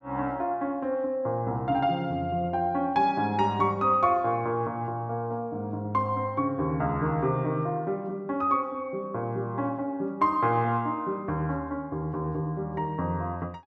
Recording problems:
none

